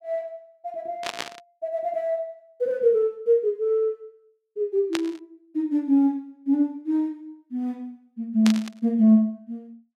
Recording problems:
static burst; at 1 s, at 5 s and at 8.5 s; peak 0 dB vs average level

